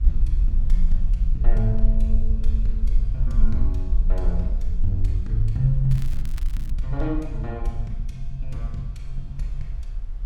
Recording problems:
low-frequency rumble; below 44 Hz, strongest tone 18 Hz, SNR -4 dB
wind noise; below 1.6 kHz, SNR 31 dB
crackling; at 6 s; loose cable, SNR 18 dB

